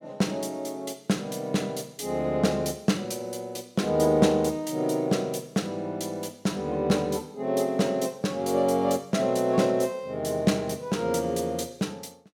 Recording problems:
none

